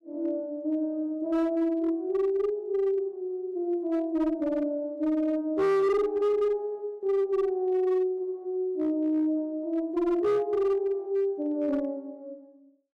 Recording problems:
distorted audio; hard clipping, uneven, signal-to-distortion ratio 11 dB

